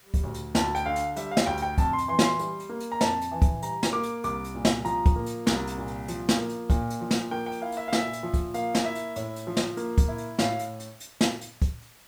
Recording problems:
background hiss; slope -1 dB per octave, SNR 26 dB

